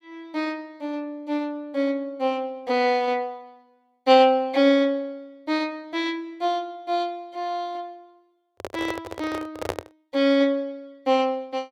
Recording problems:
handling noise; from 8.5 to 10 s; peak +1 dB vs average level

